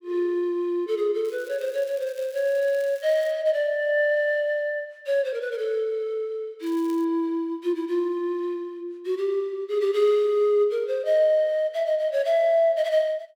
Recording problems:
crackle; from 1.5 to 3.5 s and at 6.5 s; loose cable, SNR 25 dB

